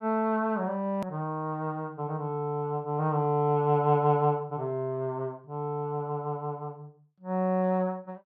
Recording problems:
click at an edit; at 1 s

